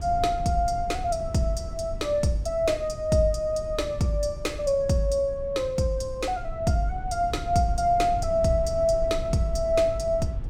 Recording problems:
rumble; below 94 Hz, SNR 11 dB

